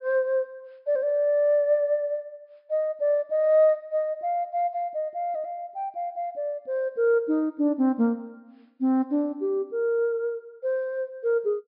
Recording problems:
treble cut off; nothing above 5.5 kHz

